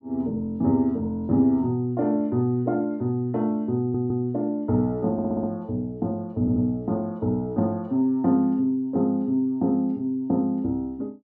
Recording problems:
stutter; at 4 s, at 5 s and at 6.5 s

